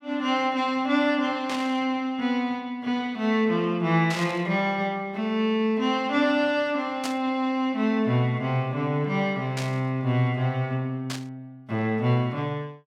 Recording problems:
static burst; 5 times, first at 1.5 s; peak -3 dB vs average level

